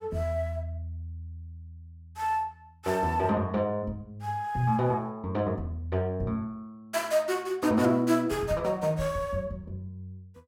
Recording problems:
none

